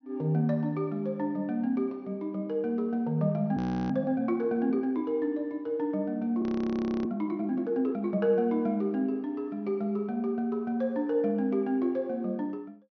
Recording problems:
treble cut off; nothing above 6.3 kHz
audio freezing; at 3.5 s and at 6.5 s for 0.5 s

